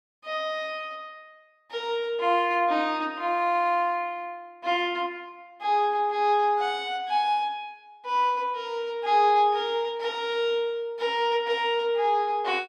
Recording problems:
none

